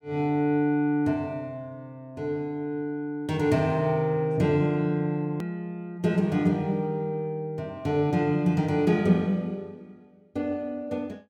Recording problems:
edit click; at 5.5 s

